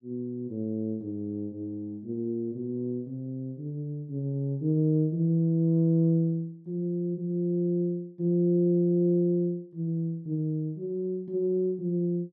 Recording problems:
none

